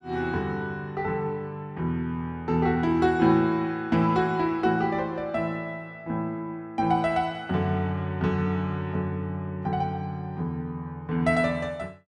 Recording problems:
none

